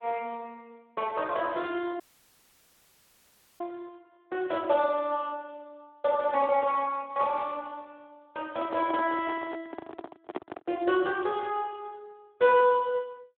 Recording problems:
telephone audio; 260 Hz to 3.5 kHz, Speex
audio cutting out; at 2 s for 1.5 s
microphone handling noise; from 8.5 to 11 s; peak -2 dB vs average level

